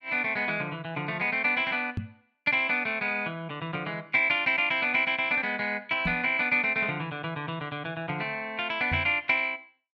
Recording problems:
knock on the microphone; at 2 s, at 6 s and at 9 s; peak -1 dB vs average level

